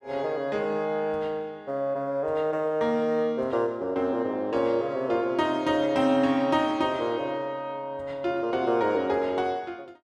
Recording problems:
none

